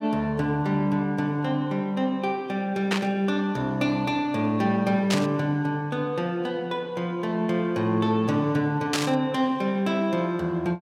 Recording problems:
static burst; at 3 s, at 5 s and at 9 s; peak +3 dB vs average level

